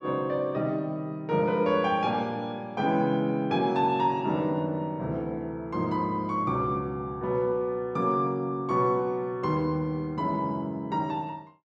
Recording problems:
none

